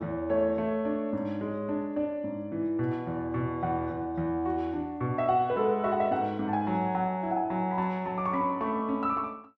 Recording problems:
none

